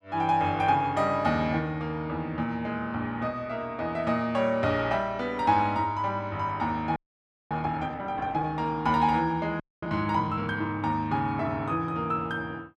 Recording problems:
audio freezing; at 7 s for 0.5 s and at 9.5 s

